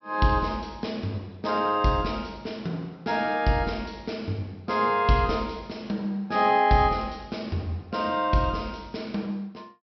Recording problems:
low-pass filter; nothing above 5.7 kHz

